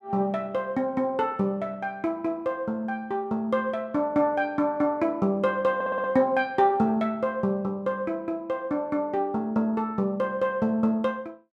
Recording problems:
audio stuttering; at 6 s

